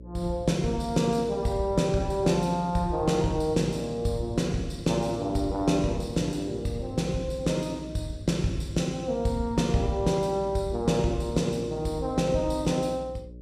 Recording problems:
hum; 60 Hz, harmonics up to 600 Hz, SNR 17 dB

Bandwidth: 14.5 kHz